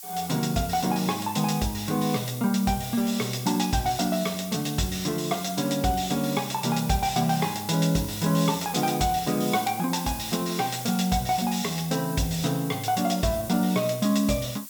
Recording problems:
hiss; slope +3 dB per octave, SNR 12 dB

